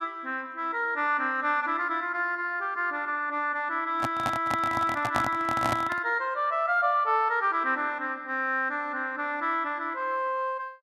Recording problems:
handling noise; from 4 to 6 s; peak +1 dB vs average level

